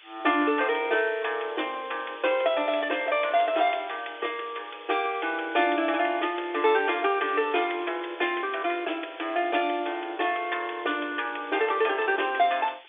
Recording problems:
phone line; 260 Hz to 3.6 kHz, G.711
background hiss; SNR 21 dB

